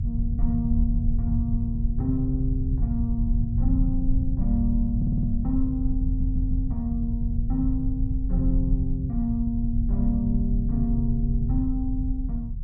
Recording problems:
rumble; below 80 Hz, strongest tone 36 Hz, SNR -1 dB
audio stuttering; at 5 s and at 6 s

